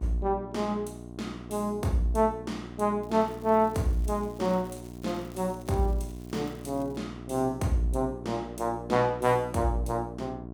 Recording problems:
hum; 60 Hz, harmonics up to 1.1 kHz, SNR 13 dB
crackling; from 3 to 7 s; loose cable, SNR 26 dB

